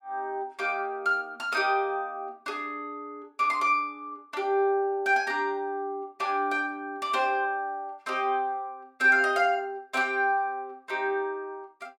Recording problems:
none

